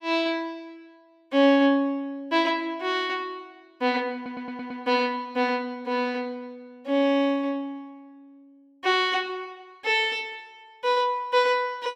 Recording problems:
audio stuttering; at 4 s

